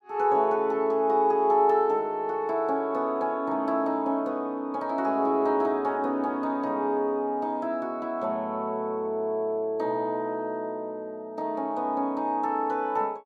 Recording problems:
none

